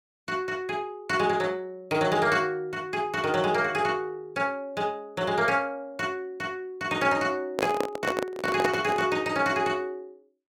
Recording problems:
handling noise; from 7.5 to 9 s; peak +4 dB vs average level

